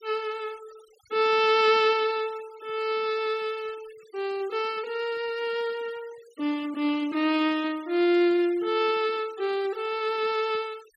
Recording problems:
denoising artefacts; signal-to-artefact ratio 23 dB

